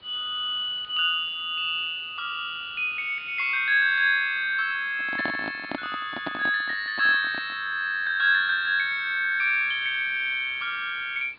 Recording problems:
treble cut off; nothing above 4.7 kHz
background hiss; SNR 30 dB
microphone handling noise; from 5 to 7.5 s; peak -3 dB vs average level

